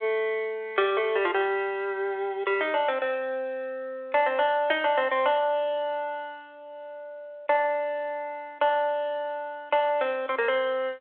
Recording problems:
telephone audio; 340 Hz to 3.8 kHz, G.726

